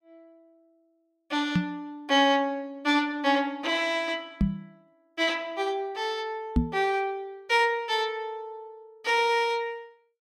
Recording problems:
knock on the microphone; at 1.5 s, at 4.5 s and at 6.5 s; peak +7 dB vs average level

